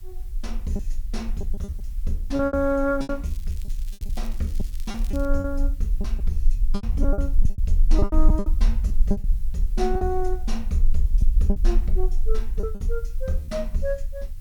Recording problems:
background hiss; slope +1 dB per octave, SNR 26 dB
rumble; below 38 Hz, strongest tone 18 Hz, SNR -2 dB
packet loss; 11% of the sound replaced, filled with repeated pitch periods
crackle; from 3.5 to 5.5 s; loose cable, SNR 20 dB

